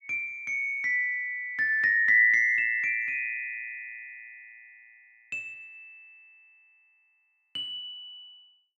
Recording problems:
none

